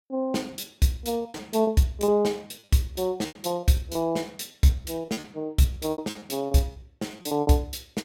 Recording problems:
packet loss; 15% of the sound replaced, filled with repeated pitch periods

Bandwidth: 16.5 kHz